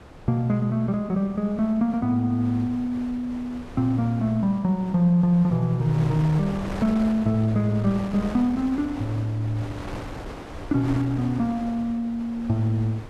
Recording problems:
wind noise; below 870 Hz, SNR 15 dB

